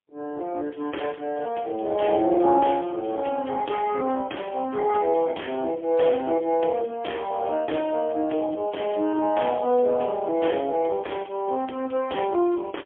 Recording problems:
telephone audio; 260 Hz to 3.4 kHz, AMR-NB, then MP3

